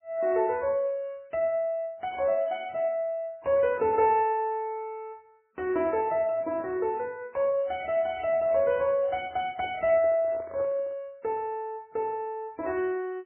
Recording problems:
codec artefacts; MP3, then MP3, log-spectral distance 2 dB, nothing above 3 kHz
handling noise; from 9.5 to 11 s; peak -10 dB vs average level

